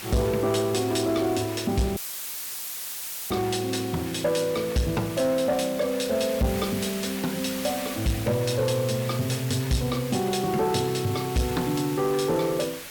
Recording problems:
distorted audio; soft clipping, signal-to-distortion ratio 11 dB
hiss; SNR 11 dB
audio cutting out; at 2 s for 1.5 s; filled with static

